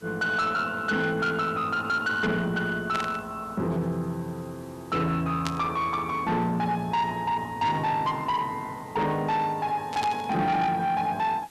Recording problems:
distorted audio; soft clipping, signal-to-distortion ratio 11 dB
hiss; slope -2 dB per octave, SNR 27 dB
static burst; at 3 s, at 5.5 s and at 10 s; peak -1 dB vs average level

